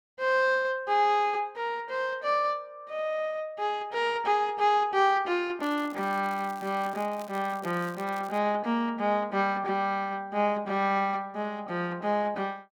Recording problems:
crackling; from 5.5 to 8.5 s; loose cable, SNR 23 dB

